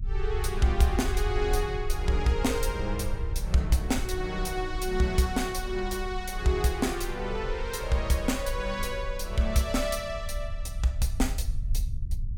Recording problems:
rumble; below 60 Hz, SNR 6 dB

